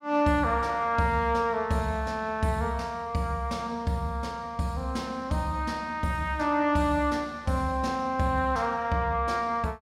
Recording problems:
none

